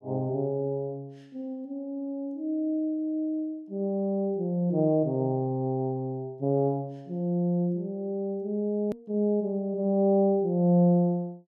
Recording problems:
edit click; at 9 s

